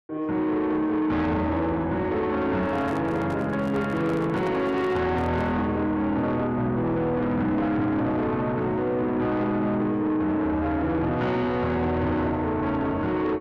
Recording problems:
distortion; soft clipping, signal-to-distortion ratio 11 dB
microphone handling noise; from 2.5 to 5.5 s; peak -8 dB vs average level

